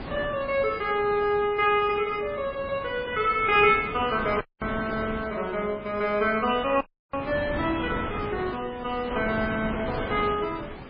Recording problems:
codec artefacts; MP3, then MP3, log-spectral distance 4 dB, nothing above 4.6 kHz
wind noise; below 1.1 kHz, SNR 11 dB
dropout; at 4.5 s and at 7 s

